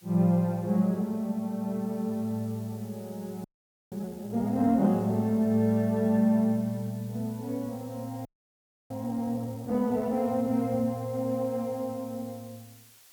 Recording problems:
hiss; slope +1 dB per octave, SNR 25 dB
audio freezing; at 3.5 s and at 8.5 s for 0.5 s

